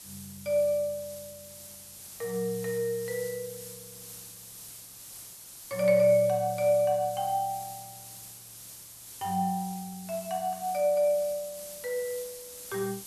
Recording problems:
background hiss; SNR 14 dB

